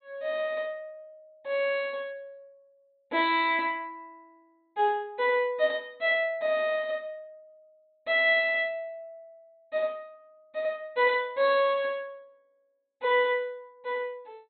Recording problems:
low-pass filter; nothing above 4 kHz

